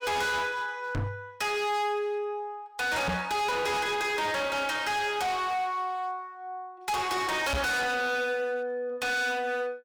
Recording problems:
distortion; hard clipping, uneven, signal-to-distortion ratio 6 dB
microphone thump; at 1 s, at 3 s and at 7.5 s; peak +4 dB vs average level

